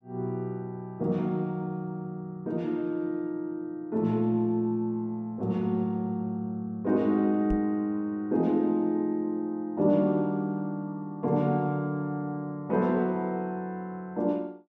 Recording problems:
microphone bump; at 7.5 s; peak 0 dB vs average level

